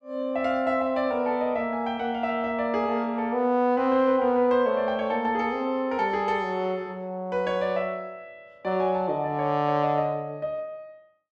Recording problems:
none

